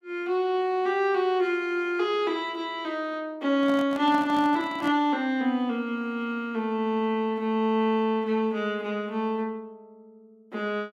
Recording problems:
handling noise; from 3.5 to 5 s; peak -7 dB vs average level

